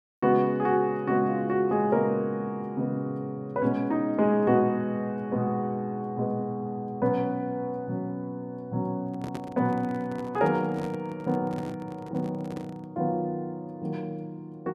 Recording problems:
handling noise; from 9 to 13 s; peak -4 dB vs average level

